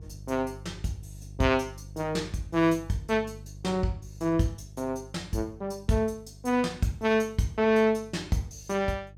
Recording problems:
hum; 50 Hz, harmonics up to 500 Hz, SNR 18 dB

